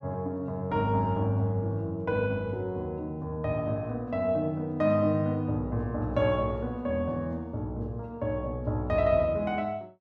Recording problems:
none

